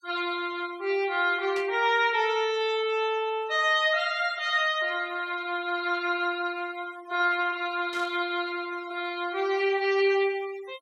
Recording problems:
noise reduction artefacts; signal-to-artefact ratio 21 dB
static burst; at 1.5 s and at 8 s; peak -10 dB vs average level

